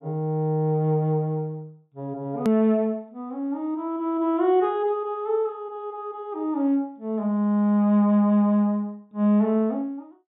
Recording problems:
treble cut off; nothing above 4 kHz
hard cut with a click; at 2.5 s

